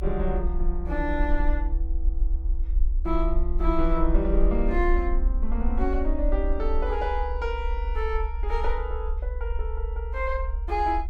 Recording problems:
rumble; below 52 Hz, SNR -1 dB

